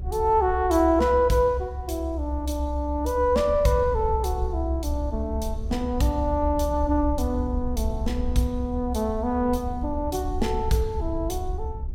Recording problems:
low-frequency rumble; below 72 Hz, strongest tone 66 Hz, SNR 6 dB

